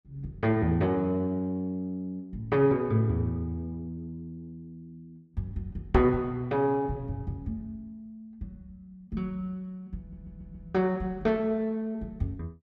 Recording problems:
knock on the microphone; at 6 s; peak +8 dB vs average level
stutter; at 10 s

